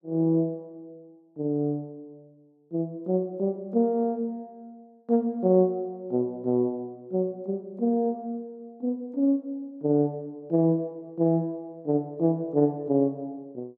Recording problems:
none

